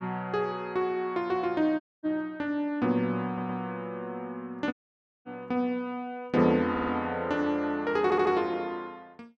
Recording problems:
audio cutting out; at 2 s and at 4.5 s for 0.5 s
audio stuttering; at 3.5 s, at 6.5 s and at 8 s

